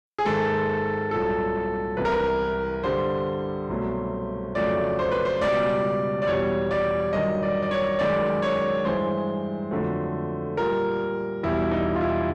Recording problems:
distorted audio; soft clipping, signal-to-distortion ratio 11 dB

